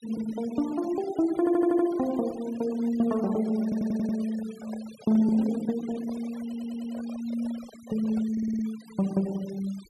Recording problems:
denoising artefacts; signal-to-artefact ratio 20 dB
stutter; 4 times, first at 1.5 s
handling noise; from 3.5 to 8.5 s; peak -11 dB vs average level

